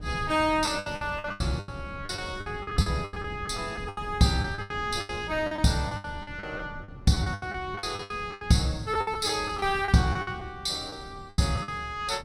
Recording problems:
wind on the microphone; below 200 Hz, SNR 15 dB
lost packets; 17% of the sound replaced, filled with the last packet

